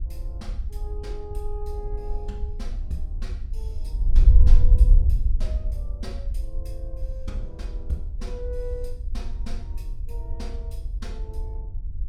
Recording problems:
wind noise; below 56 Hz, SNR -13 dB

